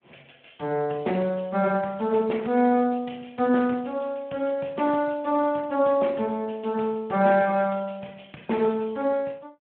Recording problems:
telephone audio; 220 Hz to 3 kHz, Speex

